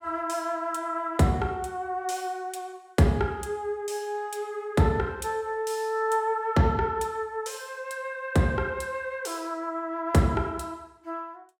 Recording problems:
none

